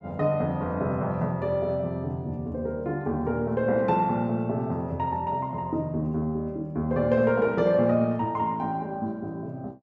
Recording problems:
none

